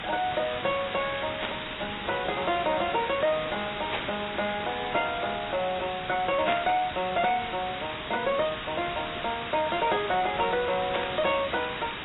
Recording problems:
lossy codec; AAC, log-spectral distance 19 dB, nothing above 3.8 kHz
distorted audio; soft clipping, signal-to-distortion ratio 10 dB
background hiss; SNR 7 dB
static burst; 4 times, first at 1.5 s; peak +1 dB vs average level

